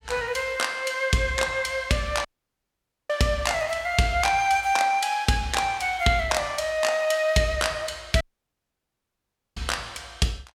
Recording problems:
dropout; at 2.5 s for 1 s and at 8 s for 1.5 s

